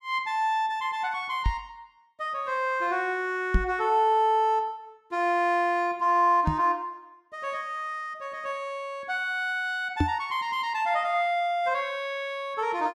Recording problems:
microphone thump; 4 times, first at 1.5 s; peak +6 dB vs average level

